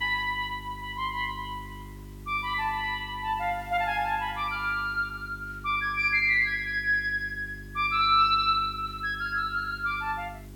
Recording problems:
electrical hum; 50 Hz, harmonics up to 400 Hz, SNR 18 dB
background hiss; slope -3 dB per octave, SNR 29 dB

